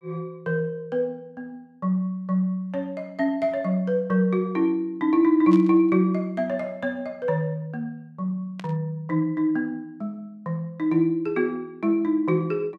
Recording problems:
burst of static; at 5.5 s and at 8.5 s; peak -12 dB vs average level

